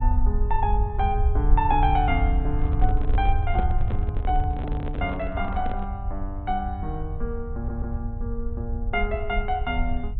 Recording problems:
treble cut off; nothing above 4 kHz
rumble; below 68 Hz, SNR -1 dB
handling noise; from 2.5 to 6 s; peak 0 dB vs average level
stutter; at 7.5 s

